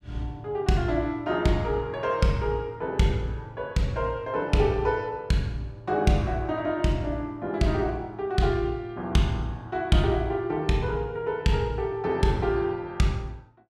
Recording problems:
none

